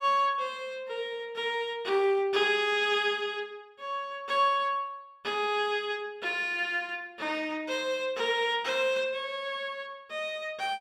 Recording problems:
none

